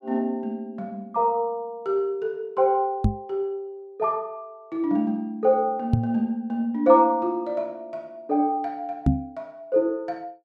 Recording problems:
microphone thump; at 3 s, at 6 s and at 9 s; peak +8 dB vs average level

